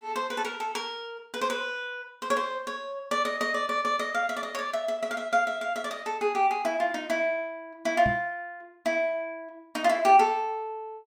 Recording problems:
microphone bump; at 8 s; peak 0 dB vs average level

